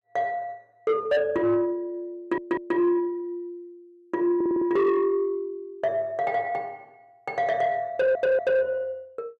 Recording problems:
distortion; soft clipping, signal-to-distortion ratio 11 dB
audio stuttering; at 2 s, at 4.5 s and at 8 s

